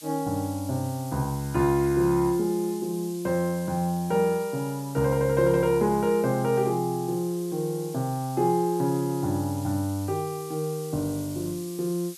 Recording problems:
hiss; slope +4 dB per octave, SNR 17 dB

